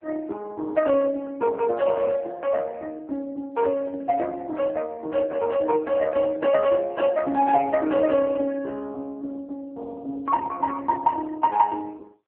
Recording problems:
phone line; 240 Hz to 3.4 kHz, AMR-NB

